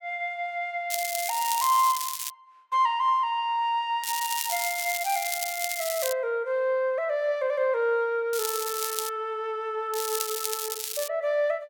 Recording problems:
crackling; 4 times, first at 1 s; loose cable, SNR 4 dB

